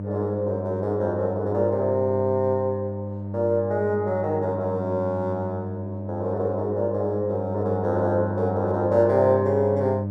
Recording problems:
mains hum; 50 Hz, harmonics up to 700 Hz, SNR 7 dB

